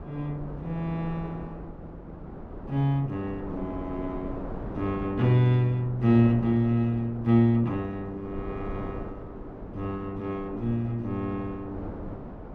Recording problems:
wind on the microphone; below 470 Hz, SNR 13 dB

